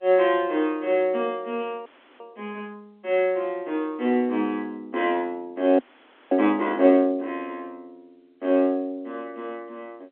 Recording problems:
phone line; 220 Hz to 3.7 kHz, G.711
audio freezing; at 2 s and at 6 s for 0.5 s

